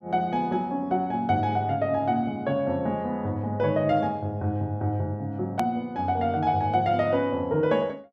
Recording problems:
click at an edit; at 5.5 s

